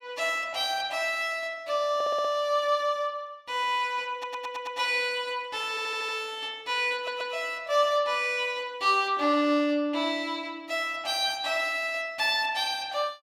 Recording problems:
audio stuttering; 4 times, first at 2 s

